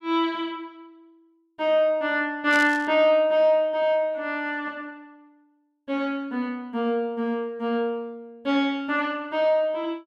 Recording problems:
burst of static; at 2.5 s; peak -6 dB vs average level

